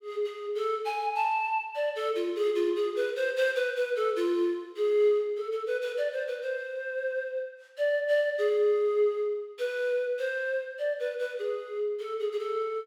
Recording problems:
none

